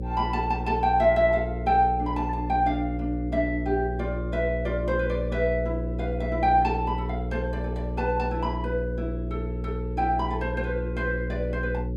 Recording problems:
electrical hum; 60 Hz, harmonics up to 540 Hz, SNR 5 dB

